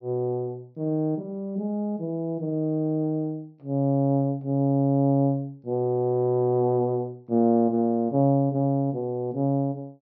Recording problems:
treble cut off; nothing above 6 kHz

